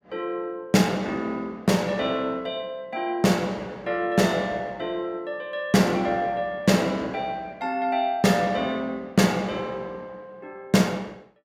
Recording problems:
none

